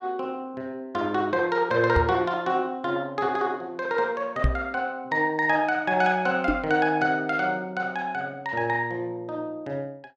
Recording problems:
microphone thump; at 2 s, at 4.5 s and at 6.5 s; peak +6 dB vs average level

